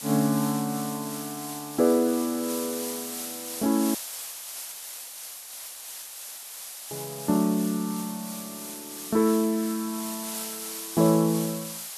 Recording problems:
hiss; SNR 8 dB
audio cutting out; at 4 s for 3 s

